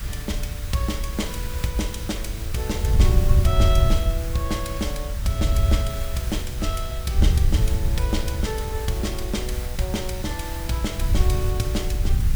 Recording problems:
hiss; SNR 9 dB
wind on the microphone; below 82 Hz, SNR -4 dB

